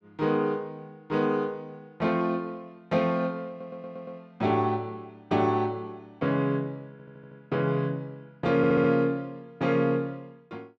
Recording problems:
audio stuttering; at 3.5 s, at 7 s and at 8.5 s

